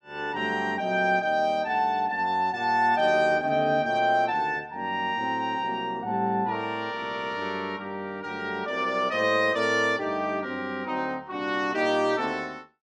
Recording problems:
none

